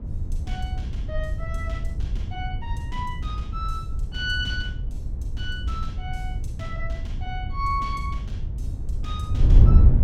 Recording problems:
wind on the microphone; below 86 Hz, SNR -6 dB

